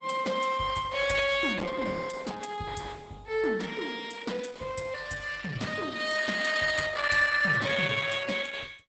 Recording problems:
lossy codec; Opus, log-spectral distance 6 dB, nothing above 8 kHz

